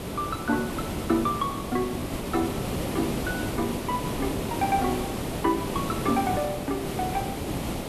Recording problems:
background hiss; SNR 2 dB

